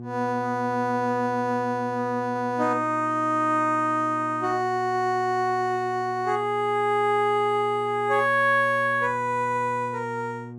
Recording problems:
hum; 60 Hz, harmonics up to 840 Hz, SNR 15 dB

